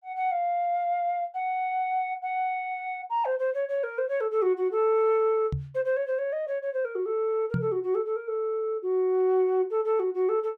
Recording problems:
microphone bump; at 5.5 s and at 7.5 s; peak +2 dB vs average level

